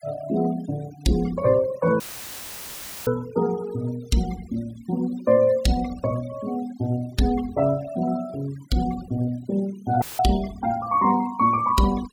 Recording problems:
denoising artefacts; signal-to-artefact ratio 19 dB
audio cutting out; at 2 s for 1 s and at 10 s; filled with static

